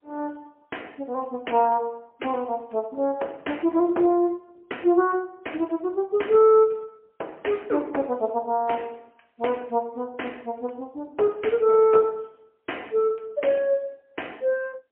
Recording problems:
phone line; 300 Hz to 3.1 kHz, AMR-NB, then MP3

